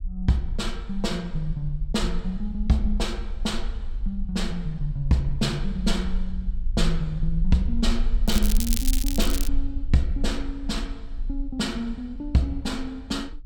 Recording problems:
low-frequency rumble; below 42 Hz, strongest tone 22 Hz, SNR 4 dB
crackling; from 8.5 to 9.5 s; loose cable, SNR 4 dB

